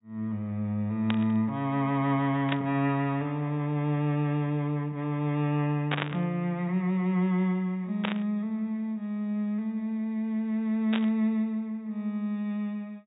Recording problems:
treble cut off; nothing above 4 kHz
static burst; 5 times, first at 1 s; peak +3 dB vs average level

